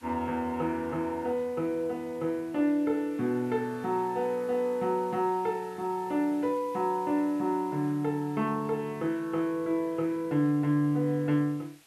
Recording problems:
hiss; slope 0 dB per octave, SNR 27 dB

